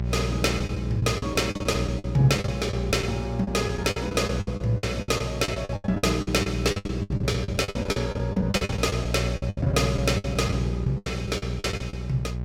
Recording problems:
hum; 60 Hz, harmonics up to 600 Hz, SNR 4 dB
packet loss; 19% of the sound replaced, filled with the last packet

